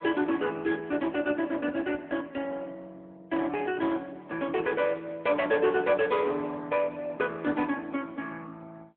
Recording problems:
telephone audio; 240 Hz to 3.4 kHz, AMR-NB

